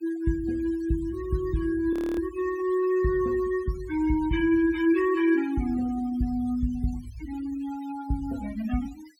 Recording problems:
denoising artefacts; signal-to-artefact ratio 18 dB
frozen audio; at 2 s

